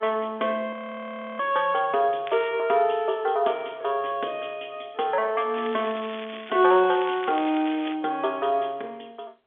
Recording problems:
phone line; 260 Hz to 3.6 kHz, G.711
frozen audio; at 0.5 s for 0.5 s
crackle; at 2.5 s and from 5.5 to 8 s; loose cable, SNR 16 dB

